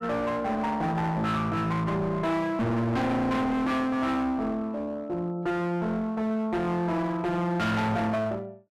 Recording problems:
distorted audio; hard clipping, uneven, signal-to-distortion ratio 5 dB

